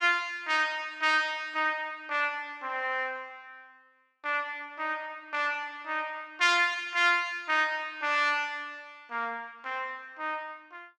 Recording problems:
none

